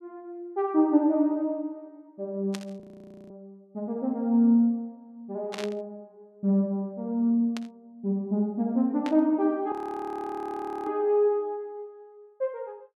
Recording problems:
static burst; 4 times, first at 2.5 s; peak -6 dB vs average level
audio freezing; at 3 s for 0.5 s and at 9.5 s for 1 s

